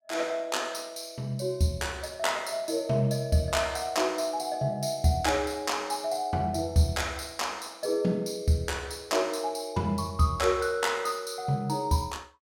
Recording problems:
none

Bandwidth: 17 kHz